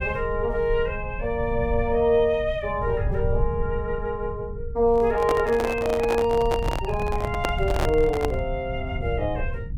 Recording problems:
low-frequency rumble; below 96 Hz, SNR 8 dB
microphone handling noise; from 5 to 8.5 s; peak +3 dB vs average level

